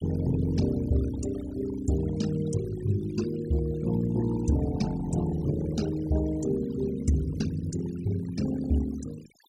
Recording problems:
noise reduction artefacts; signal-to-artefact ratio 16 dB

